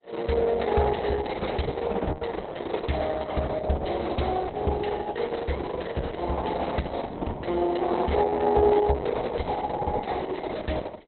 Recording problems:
lossy codec; Opus, log-spectral distance 5 dB, nothing above 4.1 kHz

